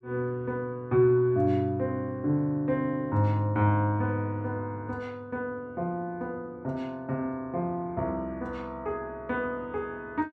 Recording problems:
none

